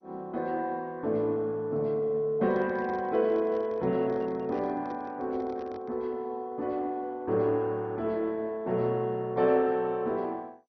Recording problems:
codec artefacts; MP2, log-spectral distance 2 dB
handling noise; from 2.5 to 6 s; peak -11 dB vs average level

